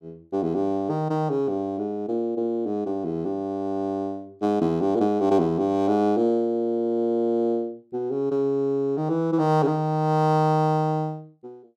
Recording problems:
none

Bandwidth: 13.5 kHz